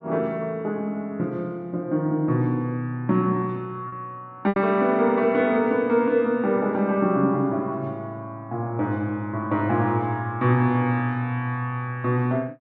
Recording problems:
lost packets; 1% of the sound replaced, filled with repeated pitch periods

